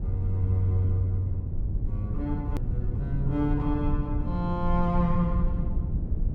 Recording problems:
low-frequency rumble; below 100 Hz, SNR 2 dB
edit click; at 2.5 s

